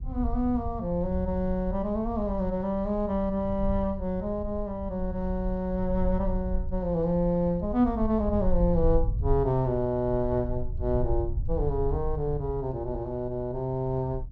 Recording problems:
low-frequency rumble; below 70 Hz, SNR 7 dB

